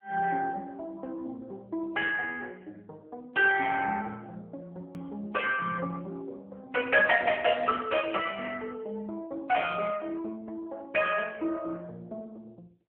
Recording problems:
telephone audio; 260 Hz to 2.9 kHz, AMR-NB
click at an edit; at 5 s

